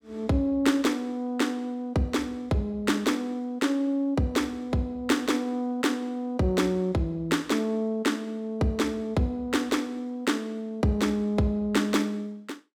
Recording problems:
none

